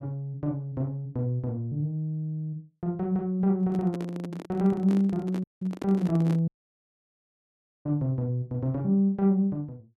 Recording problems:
microphone handling noise; from 3.5 to 6.5 s; peak -4 dB vs average level
dropout; at 5.5 s and at 6.5 s for 1.5 s

